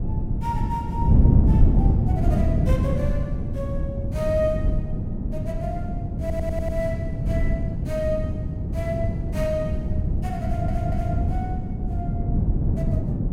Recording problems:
wind noise; below 160 Hz, SNR -7 dB
stutter; at 6 s and at 10 s

